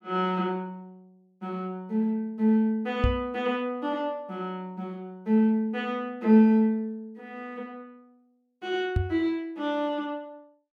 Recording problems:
microphone thump; at 3 s and at 9 s; peak +5 dB vs average level

